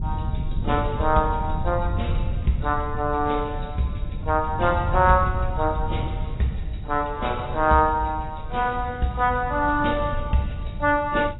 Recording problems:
lossy compression; AAC, log-spectral distance 3 dB, nothing above 3.8 kHz
wind on the microphone; below 100 Hz, SNR 6 dB

